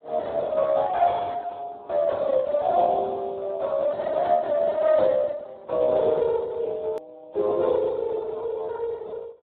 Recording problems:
telephone audio; 300 Hz to 2.1 kHz, Speex
click at an edit; at 7 s

